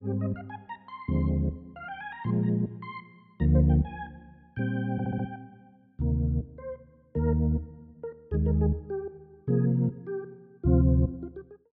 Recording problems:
stutter; at 5 s

